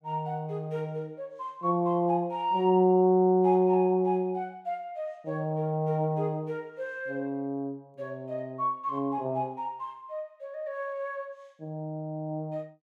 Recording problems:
none

